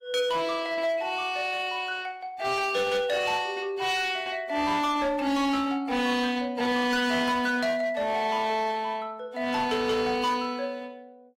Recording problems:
codec artefacts; AAC, log-spectral distance 3 dB, nothing above 15.5 kHz
distorted audio; hard clipping, signal-to-distortion ratio 12 dB

